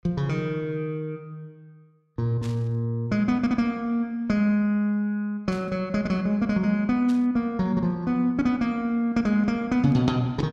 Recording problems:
static burst; at 2.5 s, at 5.5 s and at 7 s; peak -14 dB vs average level

